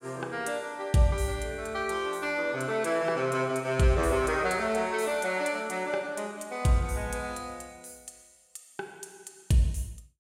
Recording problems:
none

